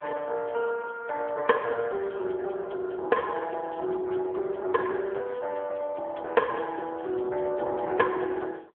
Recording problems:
phone line; 320 Hz to 2.3 kHz, AMR-NB

